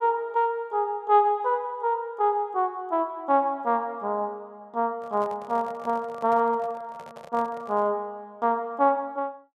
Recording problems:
handling noise; from 5 to 8 s; peak -12 dB vs average level

